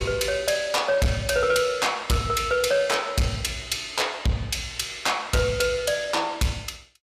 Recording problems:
distorted audio; soft clipping, signal-to-distortion ratio 11 dB

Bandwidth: 15 kHz